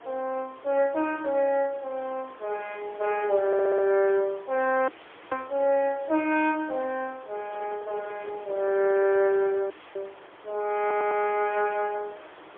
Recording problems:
telephone audio; 280 Hz to 3.4 kHz, AMR-NB, then MP3
background hiss; SNR 21 dB
audio stuttering; at 3.5 s and at 11 s
audio cutting out; at 5 s and at 9.5 s
handling noise; from 7.5 to 9.5 s; peak -13 dB vs average level

